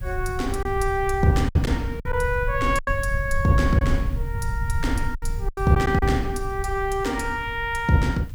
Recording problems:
hiss; slope -1 dB per octave, SNR 28 dB
low-frequency rumble; below 84 Hz, SNR 7 dB
lost packets; 5% of the sound replaced, filled with silence

